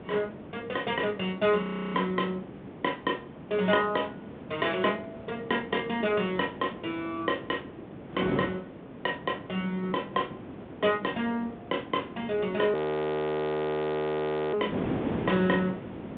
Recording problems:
phone line; 190 Hz to 3.7 kHz, G.726
wind on the microphone; below 550 Hz, SNR 9 dB
audio freezing; at 1.5 s and at 13 s for 2 s

